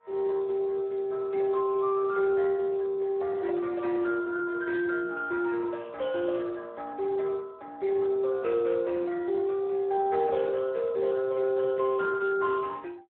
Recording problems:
phone line; 300 Hz to 2.6 kHz, Speex

